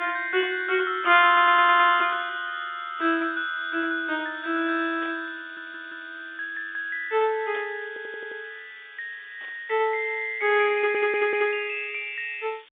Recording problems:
telephone audio; 240 Hz to 3.6 kHz, G.711
background hiss; SNR 27 dB
audio stuttering; 4 times, first at 1.5 s
burst of static; 4 times, first at 2 s; peak -14 dB vs average level

